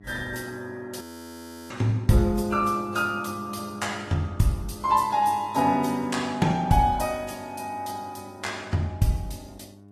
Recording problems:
lossy codec; AAC, log-spectral distance 3 dB, nothing above 14.3 kHz
electrical hum; 50 Hz, harmonics up to 800 Hz, SNR 22 dB
frozen audio; at 1 s for 0.5 s

